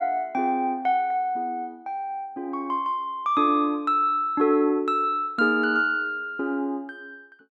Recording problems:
none

